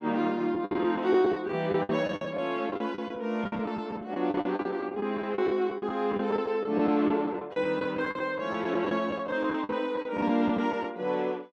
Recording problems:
lost packets; 14% of the sound replaced, filled with the last packet

